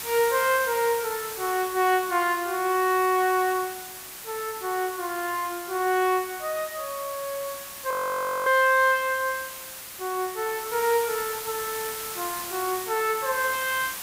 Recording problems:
background hiss; slope 0 dB per octave, SNR 9 dB
frozen audio; at 8 s for 0.5 s

